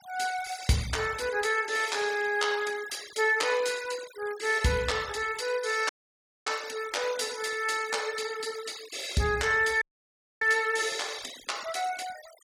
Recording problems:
denoising artefacts; signal-to-artefact ratio 15 dB
dropout; at 6 s for 0.5 s and at 10 s for 0.5 s

